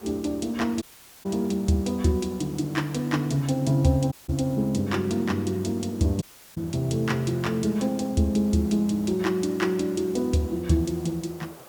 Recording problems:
background hiss; SNR 21 dB
audio cutting out; at 1 s, at 4 s and at 6 s

